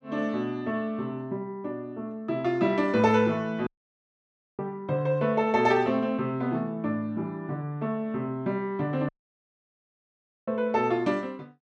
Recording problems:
dropout; at 3.5 s for 1 s and at 9 s for 1.5 s

